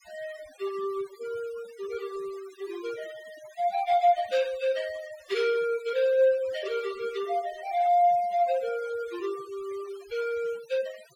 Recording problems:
noise reduction artefacts; signal-to-artefact ratio 20 dB

